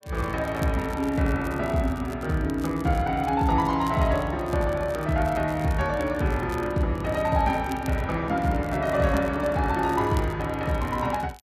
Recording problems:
crackling; vinyl, SNR 23 dB

